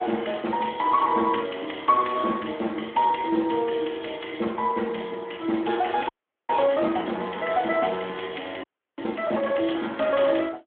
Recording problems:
telephone audio; 240 Hz to 3.6 kHz, Speex
audio freezing; at 6 s and at 8.5 s

